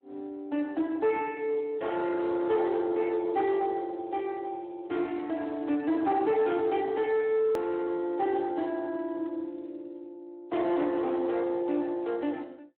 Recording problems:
telephone audio; 240 Hz to 3.1 kHz, Speex
distorted audio; soft clipping, signal-to-distortion ratio 11 dB
hard cut with a click; at 7.5 s

